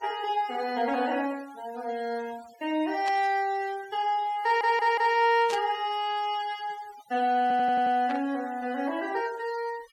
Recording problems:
noise reduction artefacts; signal-to-artefact ratio 21 dB
burst of static; at 3 s, at 5.5 s and at 8 s; peak -6 dB vs average level
audio stuttering; at 4.5 s and at 7.5 s

